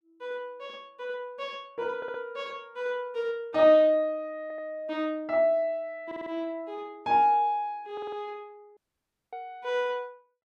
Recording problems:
audio stuttering; 4 times, first at 2 s
dropout; at 9 s for 0.5 s

